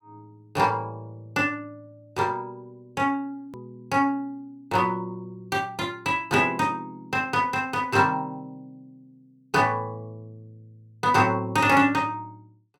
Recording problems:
hard cut with a click; at 3.5 s

